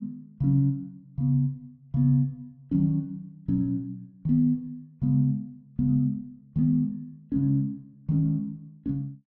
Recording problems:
none

